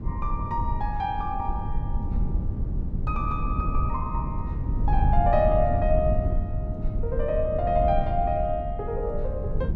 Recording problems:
rumble; below 100 Hz, SNR 1 dB

